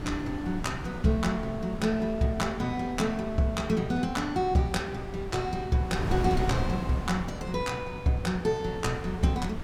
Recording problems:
wind noise; below 290 Hz, SNR 8 dB

